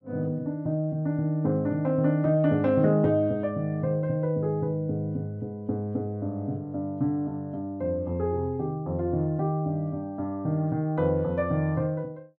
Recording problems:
none

